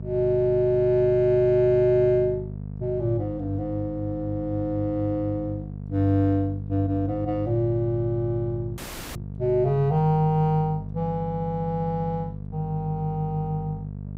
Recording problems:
hum; 50 Hz, harmonics up to 500 Hz, SNR 11 dB
audio cutting out; at 9 s

